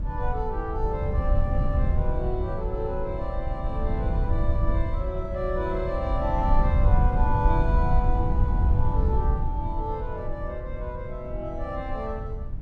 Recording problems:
wind noise; below 84 Hz, SNR -4 dB

